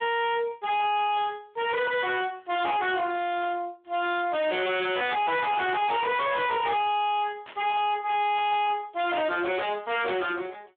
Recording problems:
telephone audio; 260 Hz to 3.7 kHz, Speex
distorted audio; hard clipping, uneven, signal-to-distortion ratio 5 dB
static burst; 4 times, first at 3.5 s; peak -13 dB vs average level

